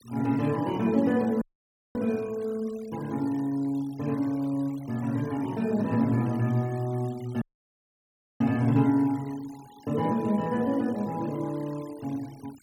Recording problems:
noise reduction artefacts; signal-to-artefact ratio 23 dB
dropout; at 1.5 s for 0.5 s and at 7.5 s for 1 s

